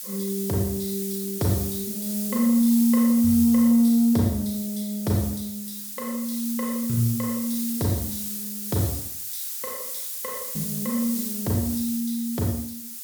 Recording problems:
background hiss; slope +6 dB per octave, SNR 7 dB

